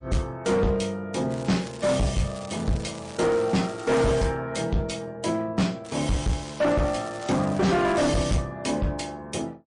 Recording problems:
lossy codec; MP3, log-spectral distance 4 dB, nothing above 9.5 kHz
distorted audio; hard clipping, uneven, signal-to-distortion ratio 7 dB
crackling; from 1.5 to 4 s and from 6 to 8.5 s; loose cable, SNR 19 dB

